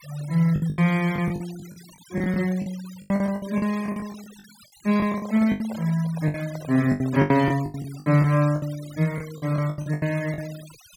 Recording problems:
noise reduction artefacts; signal-to-artefact ratio 20 dB
packet loss; 17% of the sound replaced, filled with the last packet
microphone handling noise; from 5 to 7.5 s; peak -10 dB vs average level

